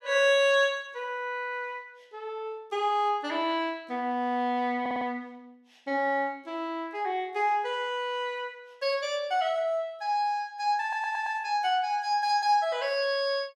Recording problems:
audio stuttering; at 5 s and at 11 s

